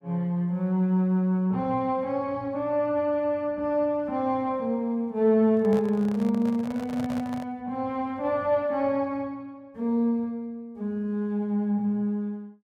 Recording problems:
microphone handling noise; from 5.5 to 7.5 s; peak -7 dB vs average level

